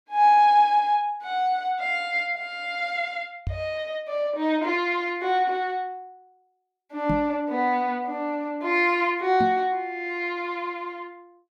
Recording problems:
knock on the microphone; at 3.5 s, at 7 s and at 9.5 s; peak 0 dB vs average level

